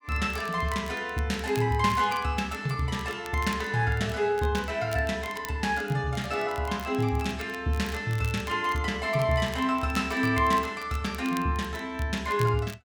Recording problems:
crackling; vinyl, SNR 19 dB

